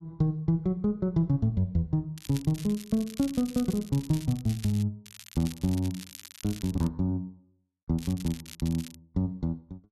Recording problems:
crackle; from 2 to 5 s, from 5 to 7 s and at 8 s; loose cable, SNR 16 dB

